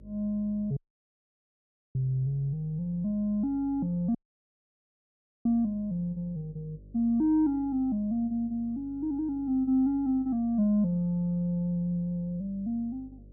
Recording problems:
mains hum; 50 Hz, harmonics up to 600 Hz, SNR 22 dB
audio cutting out; at 1 s for 1 s and at 4 s for 1.5 s

